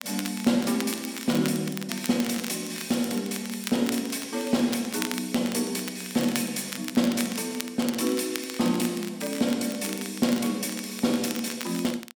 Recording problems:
crackling; vinyl, SNR 11 dB

